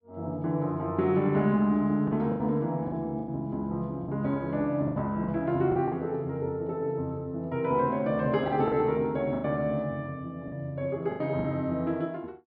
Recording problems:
treble cut off; nothing above 5.5 kHz
lost packets; 7% of the sound replaced, filled with the last packet

